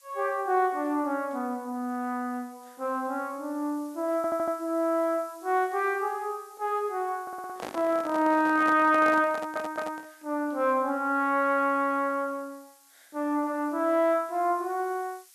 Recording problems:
background hiss; slope +5 dB per octave, SNR 27 dB
audio stuttering; at 4 s, at 7 s and at 9.5 s
handling noise; from 7.5 to 10 s; peak -4 dB vs average level

